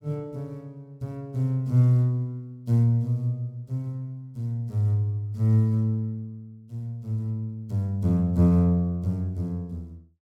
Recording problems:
none

